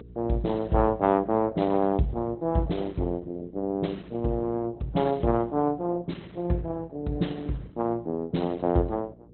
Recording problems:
lossy compression; Opus, log-spectral distance 2 dB, nothing above 4.1 kHz
hum; 60 Hz, harmonics up to 480 Hz, SNR 22 dB

